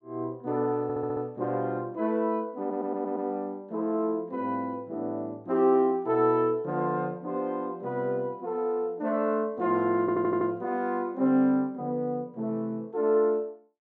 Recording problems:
stutter; at 1 s, at 2.5 s and at 10 s

